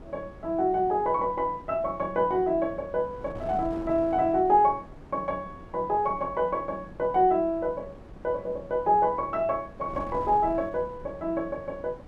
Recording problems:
wind noise; below 450 Hz, SNR 18 dB

